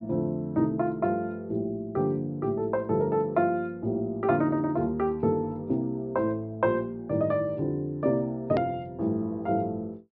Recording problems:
low-pass filter; nothing above 5.5 kHz
edit click; at 8.5 s

